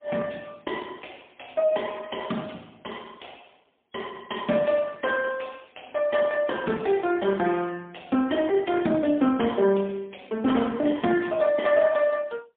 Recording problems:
phone line; 170 Hz to 3.4 kHz, AMR-NB, then MP3

